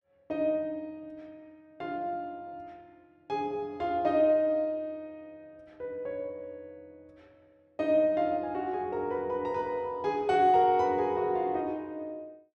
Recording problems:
none

